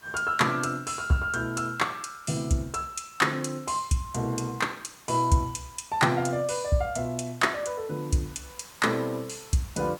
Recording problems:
background hiss; SNR 23 dB

